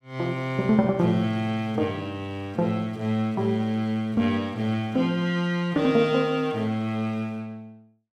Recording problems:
none

